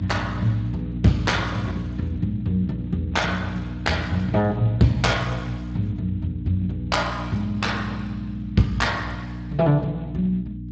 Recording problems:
lossy compression; Speex, log-spectral distance 2 dB, nothing above 7.6 kHz
distortion; hard clipping, signal-to-distortion ratio 12 dB
electrical hum; 60 Hz, harmonics up to 300 Hz, SNR 8 dB

